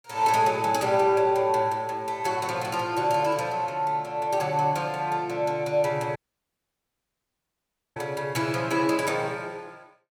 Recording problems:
audio cutting out; at 6 s for 2 s

